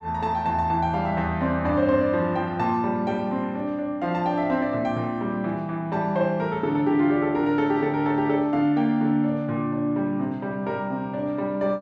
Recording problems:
none

